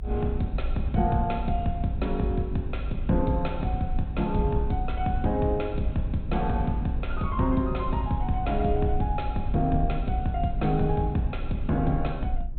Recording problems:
treble cut off; nothing above 4 kHz
low-frequency rumble; below 56 Hz, strongest tone 22 Hz, SNR 7 dB

